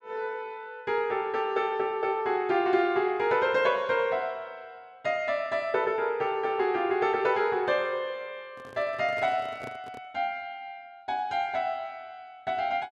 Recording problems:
microphone handling noise; from 8.5 to 10 s; peak -10 dB vs average level

